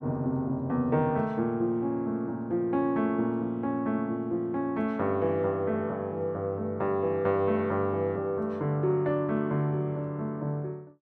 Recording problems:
none

